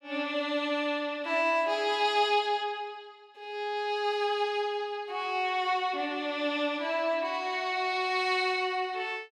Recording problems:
none

